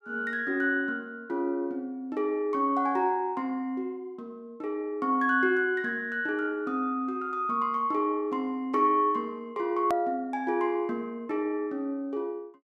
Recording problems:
edit click; at 10 s

